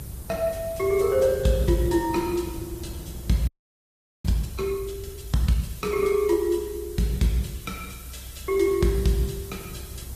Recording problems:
lossy compression; Opus, log-spectral distance 5 dB, nothing above 14.7 kHz
hiss; slope 0 dB per octave, SNR 19 dB
rumble; below 120 Hz, SNR 15 dB
audio freezing; at 3.5 s for 1 s

